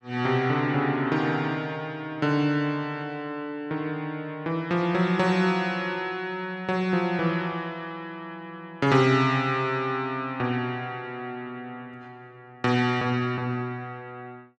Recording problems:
none

